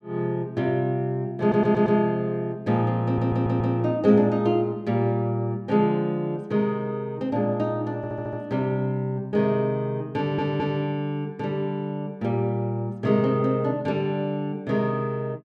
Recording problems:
audio stuttering; 4 times, first at 1.5 s

